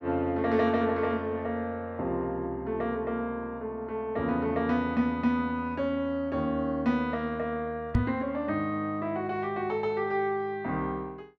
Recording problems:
microphone bump; at 8 s; peak +7 dB vs average level

